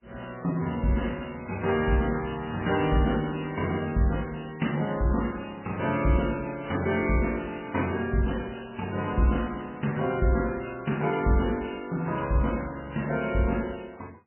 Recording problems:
lossy codec; MP3, log-spectral distance 8 dB, nothing above 2.9 kHz

